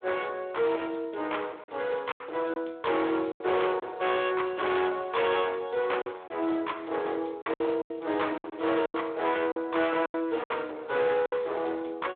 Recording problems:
telephone audio; 280 Hz to 3.7 kHz, Speex
distorted audio; hard clipping, uneven, signal-to-distortion ratio 7 dB
lost packets; 7% of the sound replaced, filled with silence

